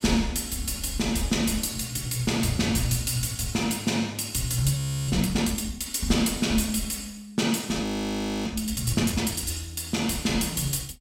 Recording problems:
audio freezing; at 5 s and at 8 s for 0.5 s

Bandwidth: 16 kHz